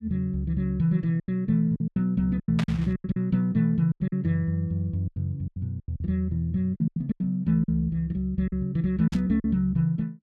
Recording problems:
lost packets; 12% of the sound replaced, filled with silence
static burst; at 2.5 s and at 9 s; peak -3 dB vs average level

